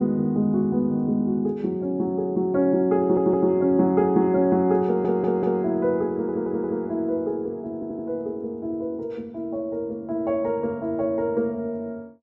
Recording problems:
stutter; 4 times, first at 3 s

